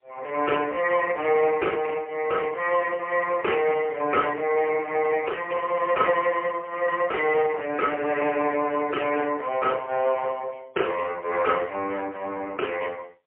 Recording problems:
telephone audio; 320 Hz to 3 kHz, AMR-NB, then MP3

